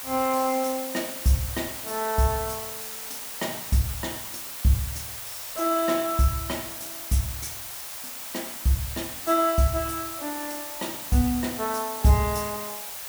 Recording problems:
background hiss; SNR 7 dB

